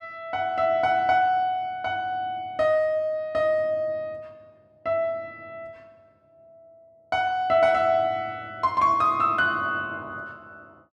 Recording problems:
none

